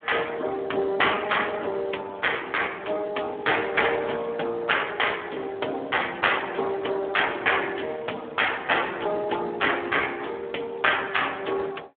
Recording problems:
telephone audio; 280 Hz to 3.4 kHz, Speex

